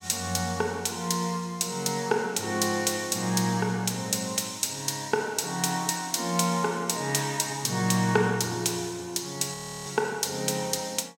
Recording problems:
frozen audio; at 9.5 s

